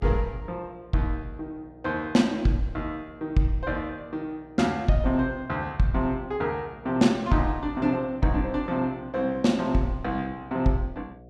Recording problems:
electrical hum; 60 Hz, harmonics up to 720 Hz, SNR 23 dB

